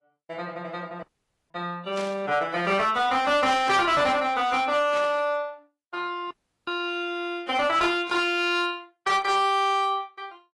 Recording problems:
lossy compression; AAC, log-spectral distance 2 dB, nothing above 11.3 kHz
distorted audio; hard clipping, uneven, signal-to-distortion ratio 11 dB
dropout; at 1 s and at 6.5 s
burst of static; 4 times, first at 2 s; peak -9 dB vs average level

